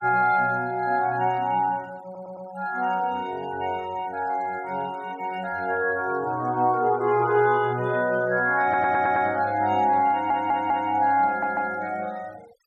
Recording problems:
noise reduction artefacts; signal-to-artefact ratio 24 dB
stutter; 4 times, first at 2 s

